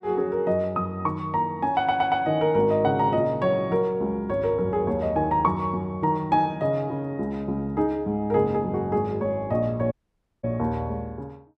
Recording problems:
stutter; at 2 s
dropout; at 10 s for 0.5 s

